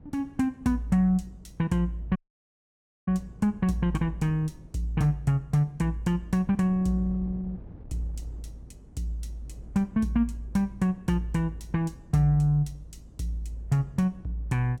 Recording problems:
wind noise; below 200 Hz, SNR 21 dB
dropout; at 2 s for 1 s

